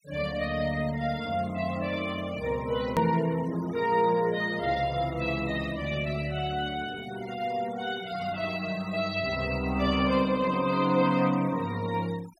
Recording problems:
noise reduction artefacts; signal-to-artefact ratio 18 dB
click at an edit; at 3 s

